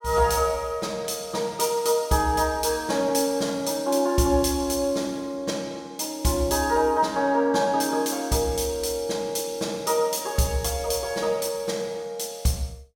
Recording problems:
none

